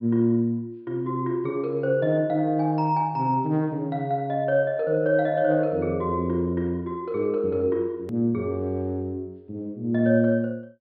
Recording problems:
treble missing; nothing above 5.5 kHz
edit click; at 8 s

